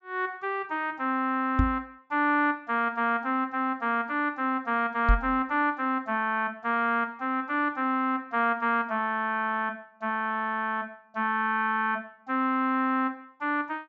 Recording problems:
treble cut off; nothing above 8 kHz
microphone bump; at 1.5 s and at 5 s; peak +7 dB vs average level

